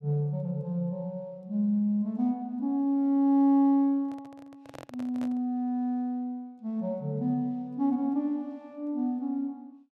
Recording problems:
handling noise; from 4 to 5.5 s; peak -11 dB vs average level

